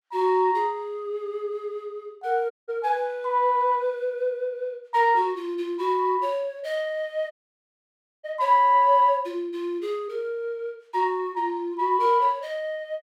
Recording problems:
dropout; at 2.5 s and at 7.5 s for 1 s

